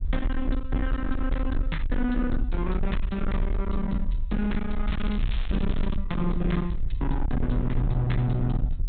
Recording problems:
low-pass filter; nothing above 4 kHz
distortion; hard clipping, uneven, signal-to-distortion ratio 8 dB
rumble; below 58 Hz, SNR 2 dB
crackle; from 5 to 6 s; loose cable, SNR 14 dB

